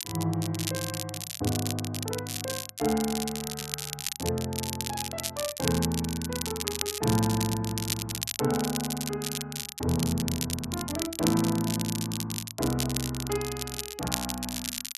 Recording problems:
crackling; vinyl, SNR 3 dB

